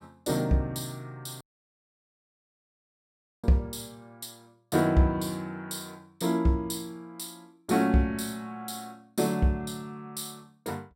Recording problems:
dropout; at 1.5 s for 2 s

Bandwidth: 16 kHz